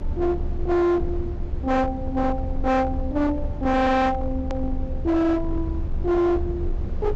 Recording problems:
treble cut off; nothing above 8 kHz
distorted audio; hard clipping, signal-to-distortion ratio 7 dB
low-frequency rumble; below 80 Hz, strongest tone 24 Hz, SNR 6 dB
hard cut with a click; at 4.5 s

